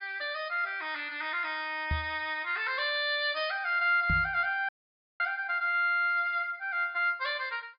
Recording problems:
treble missing; nothing above 5.2 kHz
knock on the microphone; at 2 s and at 4 s; peak 0 dB vs average level
audio cutting out; at 4.5 s for 0.5 s

